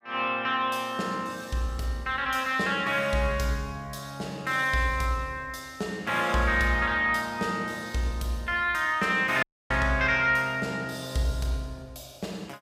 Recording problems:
audio cutting out; at 9.5 s

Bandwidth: 15.5 kHz